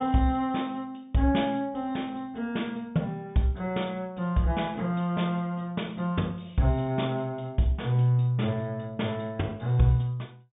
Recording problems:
treble cut off; nothing above 3.7 kHz

